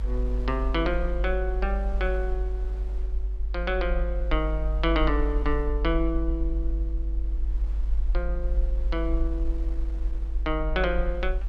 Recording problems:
low-frequency rumble; below 50 Hz, strongest tone 50 Hz, SNR -1 dB
wind on the microphone; below 1 kHz, SNR 22 dB

